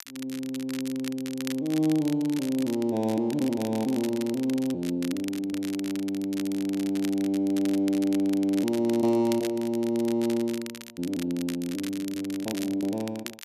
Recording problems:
crackling; vinyl, SNR 14 dB

